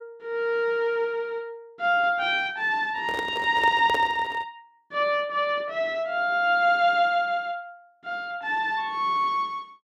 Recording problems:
microphone handling noise; from 3 to 4.5 s; peak -2 dB vs average level

